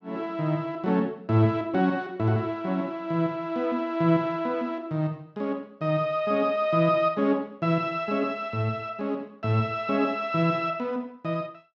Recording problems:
none

